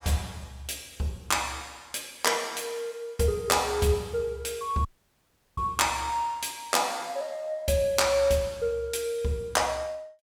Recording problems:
audio cutting out; at 5 s for 0.5 s

